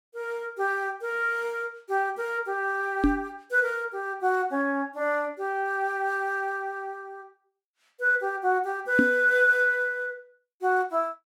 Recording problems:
microphone thump; at 3 s and at 9 s; peak +7 dB vs average level

